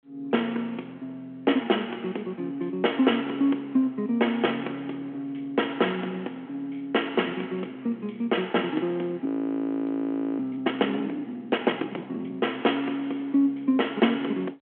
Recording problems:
telephone audio; 240 Hz to 3.4 kHz, G.726
frozen audio; at 9.5 s for 1 s

